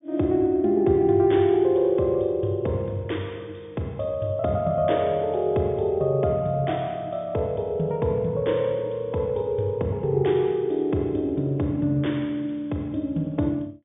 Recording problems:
treble missing; nothing above 3.6 kHz

